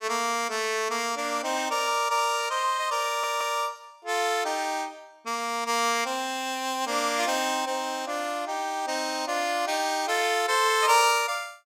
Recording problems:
stutter; at 3 s

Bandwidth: 16 kHz